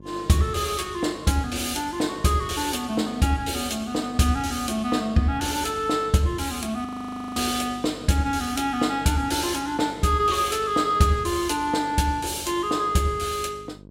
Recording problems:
electrical hum; 50 Hz, harmonics up to 650 Hz, SNR 22 dB
frozen audio; at 7 s for 0.5 s

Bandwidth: 16 kHz